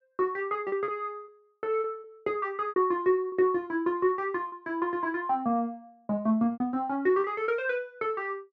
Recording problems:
lost packets; 7% of the sound replaced, filled with repeated pitch periods

